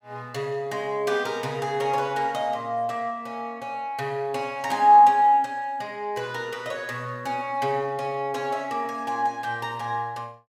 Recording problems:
none

